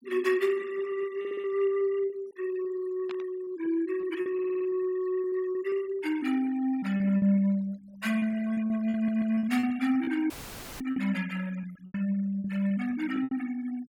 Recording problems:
denoising artefacts; signal-to-artefact ratio 21 dB
lost packets; 10% of the sound replaced, filled with repeated pitch periods
stutter; at 1 s, at 4.5 s and at 9 s
static burst; at 3 s; peak -10 dB vs average level
audio cutting out; at 10 s for 0.5 s; filled with static

